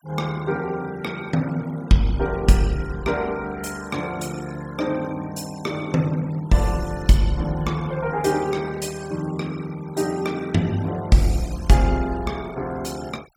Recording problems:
noise reduction artefacts; signal-to-artefact ratio 20 dB

